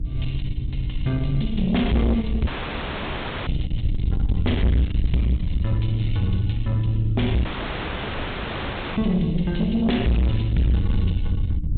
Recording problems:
treble missing; nothing above 4 kHz
distorted audio; soft clipping, signal-to-distortion ratio 8 dB
electrical hum; 60 Hz, harmonics up to 300 Hz, SNR 15 dB
wind noise; below 92 Hz, SNR 5 dB
dropout; at 2.5 s for 1 s and at 7.5 s for 1.5 s

